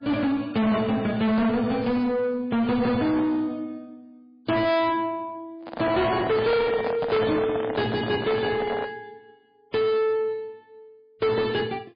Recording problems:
lossy codec; MP3, log-spectral distance 2 dB, nothing above 4.6 kHz
distorted audio; soft clipping, signal-to-distortion ratio 6 dB
handling noise; from 5.5 to 9 s; peak 0 dB vs average level

